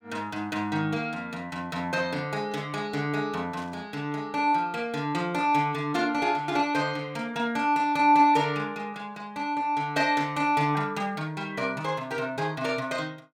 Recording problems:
burst of static; at 3.5 s; peak -14 dB vs average level

